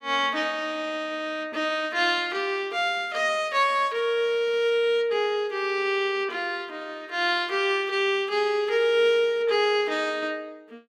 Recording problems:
none

